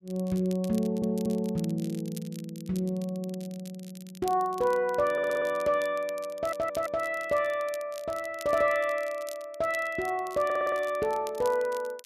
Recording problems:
crackle; vinyl, SNR 20 dB
stutter; 4 times, first at 1 s

